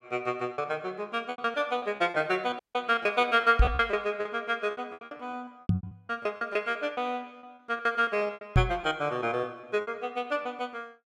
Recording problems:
packet loss; 15% of the sound replaced, filled with repeated pitch periods
dropout; at 2.5 s
microphone thump; at 3.5 s, at 5.5 s and at 8.5 s; peak +9 dB vs average level

